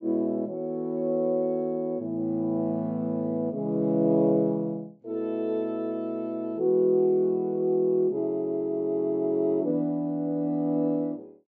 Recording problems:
low-pass filter; nothing above 8 kHz

